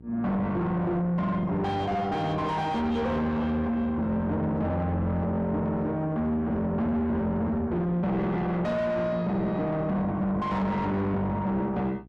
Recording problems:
distorted audio; soft clipping, signal-to-distortion ratio 8 dB
hum; 60 Hz, harmonics up to 780 Hz, SNR 23 dB

